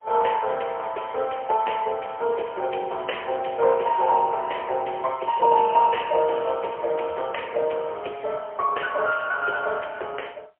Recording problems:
phone line; 370 Hz to 3.1 kHz, AMR-NB, then MP3

